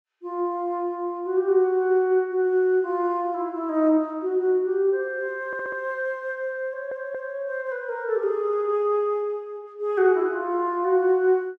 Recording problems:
audio stuttering; at 5.5 s and at 6.5 s

